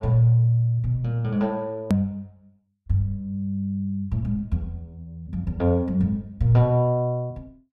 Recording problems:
click at an edit; at 2 s

